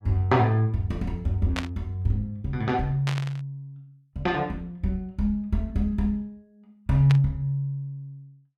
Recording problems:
static burst; at 1.5 s, at 3 s and at 7 s; peak -1 dB vs average level

